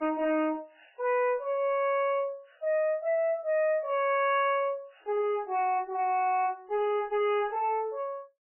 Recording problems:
lossy compression; MP3, log-spectral distance 2 dB, nothing above 2.6 kHz
distortion; soft clipping, signal-to-distortion ratio 10 dB

